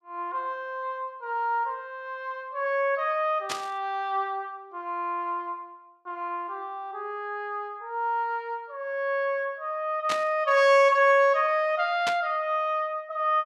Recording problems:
burst of static; at 3.5 s, at 10 s and at 12 s; peak 0 dB vs average level

